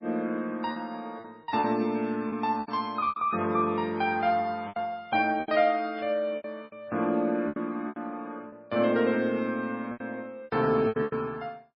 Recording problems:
lossy codec; MP3, log-spectral distance 2 dB, nothing above 4.5 kHz
packet loss; 10% of the sound replaced, filled with repeated pitch periods
burst of static; at 6 s; peak -14 dB vs average level

